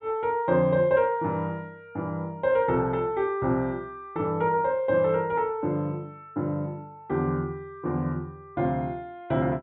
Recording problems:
treble missing; nothing above 4 kHz

